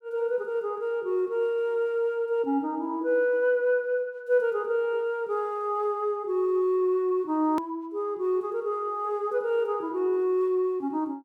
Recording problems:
click at an edit; at 7.5 s

